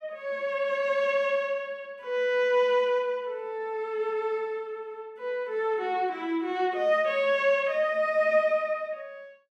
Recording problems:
none

